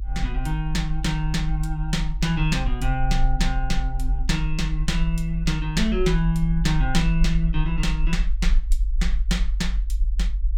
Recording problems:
low-frequency rumble; below 48 Hz, SNR 1 dB

